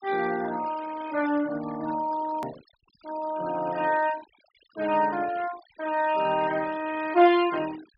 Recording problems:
treble cut off; nothing above 5.5 kHz
noise reduction artefacts; signal-to-artefact ratio 17 dB
click at an edit; at 2.5 s

